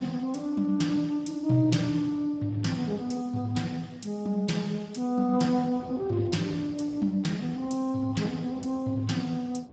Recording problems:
codec artefacts; Speex, log-spectral distance 3 dB, nothing above 7.6 kHz
wind on the microphone; below 490 Hz, SNR 21 dB

